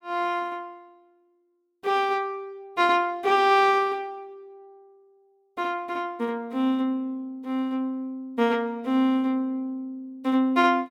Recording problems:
none

